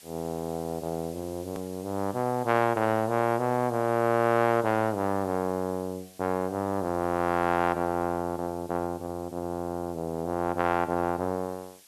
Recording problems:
hiss; SNR 22 dB
click at an edit; at 1.5 s

